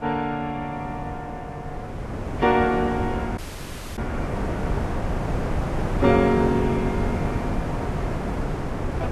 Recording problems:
lossy compression; Vorbis, log-spectral distance 2 dB
wind noise; below 520 Hz, SNR 3 dB
audio cutting out; at 3.5 s for 0.5 s

